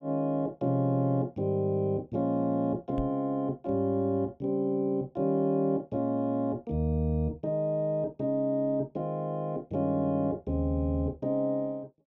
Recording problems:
microphone bump; at 3 s; peak -1 dB vs average level

